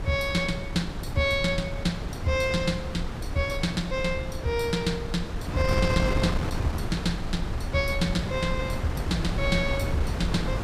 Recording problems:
wind noise; below 260 Hz, SNR 3 dB

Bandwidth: 15 kHz